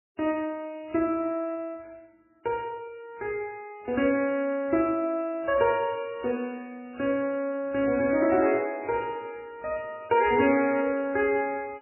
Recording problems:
lossy compression; MP3, log-spectral distance 3 dB, nothing above 2.4 kHz

